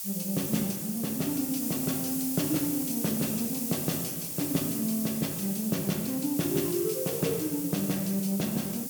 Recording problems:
background hiss; SNR 2 dB

